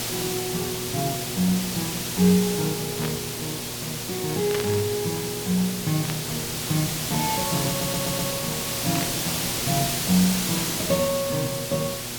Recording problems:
hum; 60 Hz, harmonics up to 1.1 kHz, SNR 13 dB
hiss; slope -1 dB per octave, SNR 1 dB
static burst; 4 times, first at 3 s; peak -1 dB vs average level
audio stuttering; at 7.5 s

